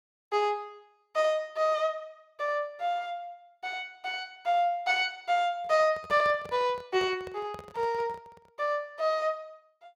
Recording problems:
microphone handling noise; from 5.5 to 8.5 s; peak -9 dB vs average level

